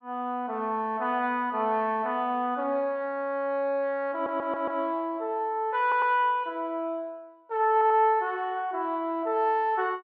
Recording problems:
audio stuttering; at 4 s, at 6 s and at 7.5 s

